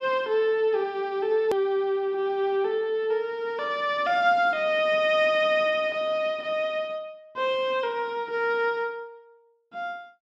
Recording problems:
edit click; at 1.5 s

